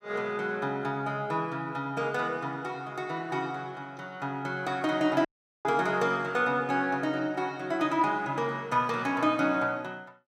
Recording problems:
dropout; at 5.5 s

